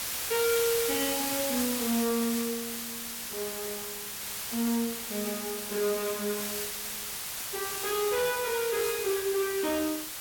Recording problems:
distortion; hard clipping, signal-to-distortion ratio 10 dB
hiss; slope +1 dB per octave, SNR 2 dB

